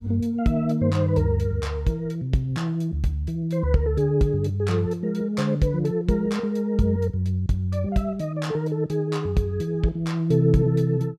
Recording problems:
none

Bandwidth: 14.5 kHz